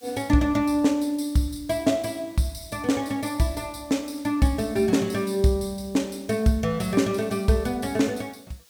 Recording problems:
background hiss; slope +1 dB per octave, SNR 29 dB

